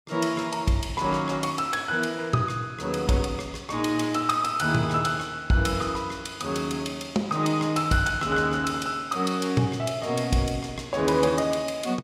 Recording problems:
none

